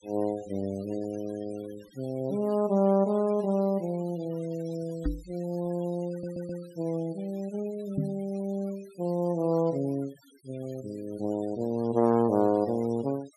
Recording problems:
denoising artefacts; signal-to-artefact ratio 23 dB
microphone bump; at 5 s and at 8 s; peak +3 dB vs average level
stutter; at 6 s

